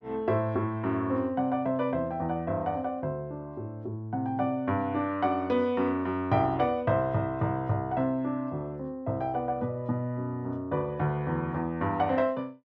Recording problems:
none

